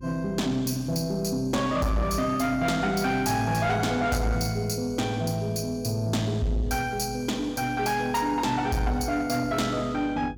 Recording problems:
distortion; soft clipping, signal-to-distortion ratio 11 dB
electrical hum; 50 Hz, harmonics up to 400 Hz, SNR 19 dB

